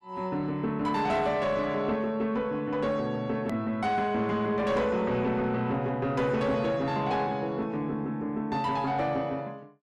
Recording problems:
distortion; soft clipping, signal-to-distortion ratio 11 dB
edit click; at 3.5 s

